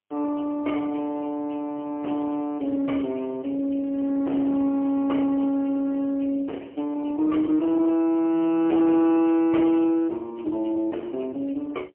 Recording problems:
telephone audio; 220 Hz to 2.1 kHz, AMR-NB, then MP3
distorted audio; hard clipping, uneven, signal-to-distortion ratio 11 dB

